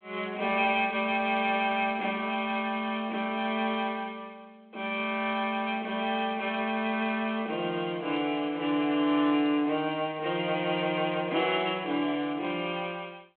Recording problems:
phone line; 240 Hz to 3.6 kHz, G.726

